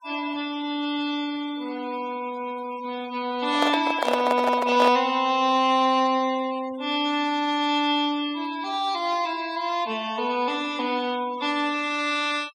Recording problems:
denoising artefacts; signal-to-artefact ratio 19 dB
microphone handling noise; from 3.5 to 5 s; peak +3 dB vs average level

